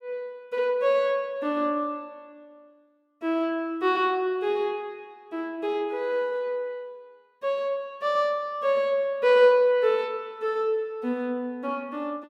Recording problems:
none

